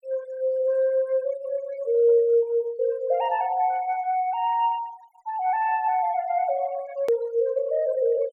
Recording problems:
denoising artefacts; signal-to-artefact ratio 24 dB
edit click; at 7 s

